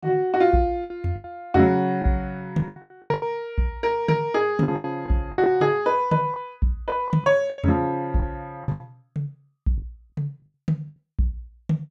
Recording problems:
packet loss; 10% of the sound replaced, filled with the last packet

